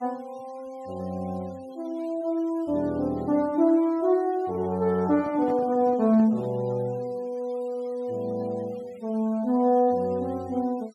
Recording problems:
noise reduction artefacts; signal-to-artefact ratio 27 dB
microphone handling noise; from 5 to 6.5 s; peak -9 dB vs average level

